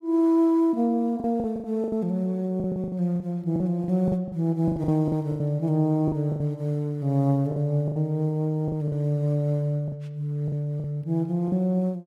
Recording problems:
packet loss; 11% of the sound replaced, filled with the last packet

